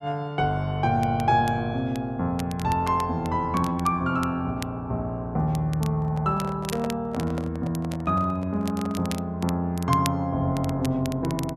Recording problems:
crackling; vinyl, SNR 16 dB
microphone handling noise; from 6 to 9 s; peak -5 dB vs average level

